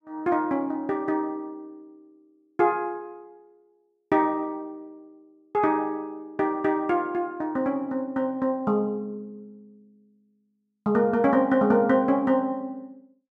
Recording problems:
none

